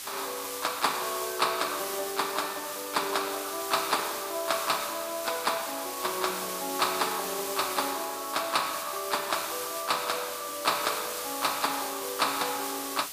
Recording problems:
background hiss; slope +2 dB per octave, SNR 5 dB

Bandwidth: 15 kHz